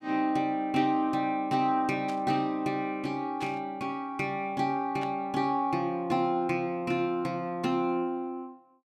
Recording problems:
static burst; at 2 s, at 3.5 s and at 5 s; peak -9 dB vs average level

